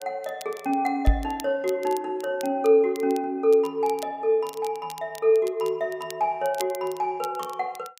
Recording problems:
crackling; vinyl, SNR 20 dB
knock on the microphone; at 1 s; peak +8 dB vs average level

